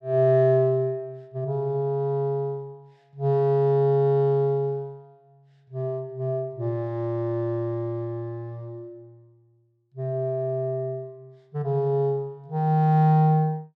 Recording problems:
none

